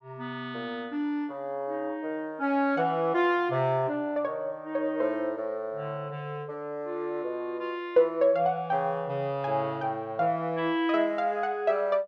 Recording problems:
none

